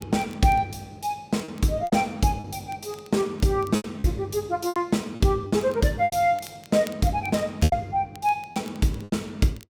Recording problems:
crackling; vinyl, SNR 26 dB
packet loss; 8% of the sound replaced, filled with repeated pitch periods

